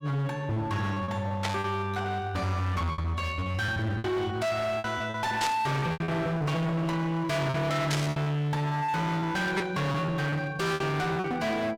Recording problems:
distorted audio; hard clipping, uneven, signal-to-distortion ratio 6 dB
packet loss; 9% of the sound replaced, filled with repeated pitch periods
static burst; 4 times, first at 1.5 s; peak +4 dB vs average level

